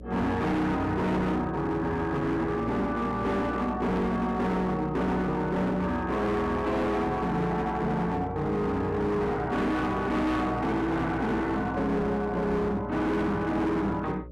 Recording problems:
distortion; hard clipping, signal-to-distortion ratio 8 dB
hum; 60 Hz, harmonics up to 600 Hz, SNR 15 dB

